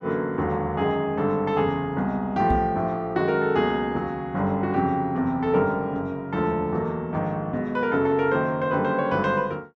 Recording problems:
knock on the microphone; at 2.5 s; peak +2 dB vs average level

